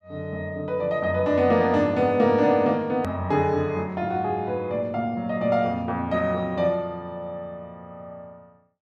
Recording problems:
click at an edit; at 3 s

